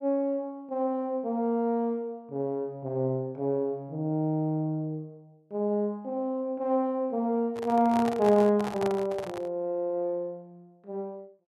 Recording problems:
microphone handling noise; from 7.5 to 9.5 s; peak -3 dB vs average level

